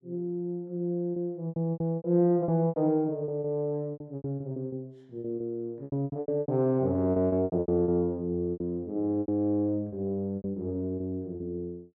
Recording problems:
lost packets; 16% of the sound replaced, filled with repeated pitch periods

